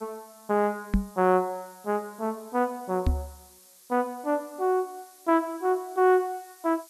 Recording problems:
background hiss; SNR 24 dB
microphone thump; at 1 s and at 3 s; peak +7 dB vs average level

